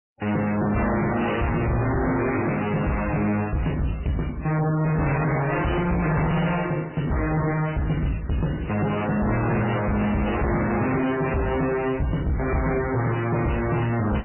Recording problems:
lossy codec; MP3, then AAC, log-spectral distance 7 dB, nothing above 2.9 kHz
distorted audio; hard clipping, uneven, signal-to-distortion ratio 6 dB

